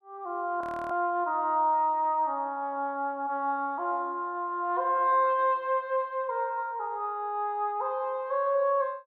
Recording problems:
frozen audio; at 0.5 s

